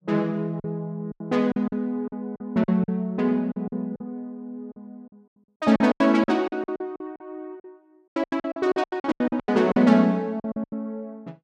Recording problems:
packet loss; 16% of the sound replaced, filled with silence

